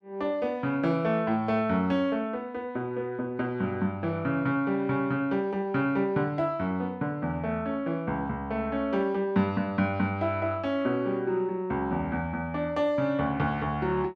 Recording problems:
none

